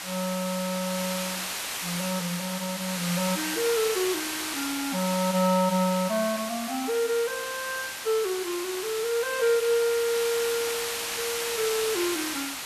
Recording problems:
background hiss; slope +1 dB per octave, SNR 3 dB

